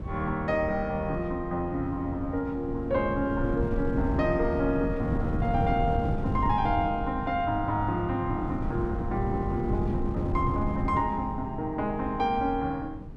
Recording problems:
wind noise; below 210 Hz, SNR 5 dB

